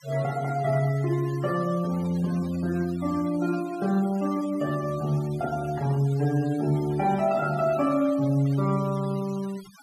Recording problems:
denoising artefacts; signal-to-artefact ratio 20 dB

